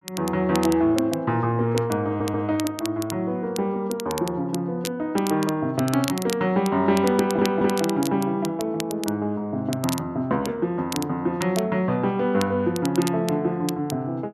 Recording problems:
crackling; vinyl, SNR 13 dB
audio stuttering; at 2 s and at 7 s

